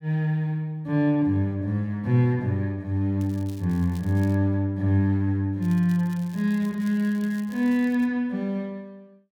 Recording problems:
crackle; from 3 to 4.5 s and from 5.5 to 8 s; loose cable, SNR 27 dB

